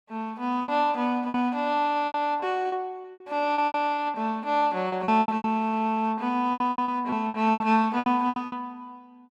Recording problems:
packet loss; 15% of the sound replaced, filled with repeated pitch periods

